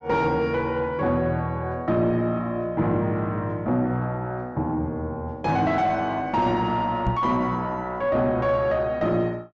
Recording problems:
treble cut off; nothing above 8 kHz
distortion; soft clipping, signal-to-distortion ratio 11 dB
knock on the microphone; at 7 s; peak +3 dB vs average level

